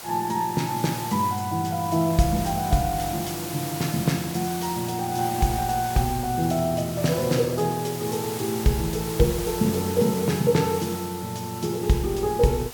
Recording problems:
hiss; SNR 10 dB

